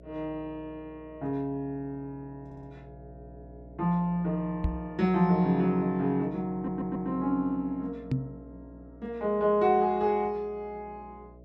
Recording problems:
hum; 60 Hz, harmonics up to 660 Hz, SNR 22 dB
stutter; at 2.5 s and at 6.5 s
knock on the microphone; at 4.5 s and at 8 s; peak +4 dB vs average level

